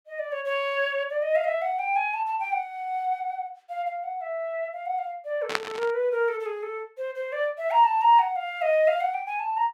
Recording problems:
burst of static; at 5.5 s; peak +5 dB vs average level

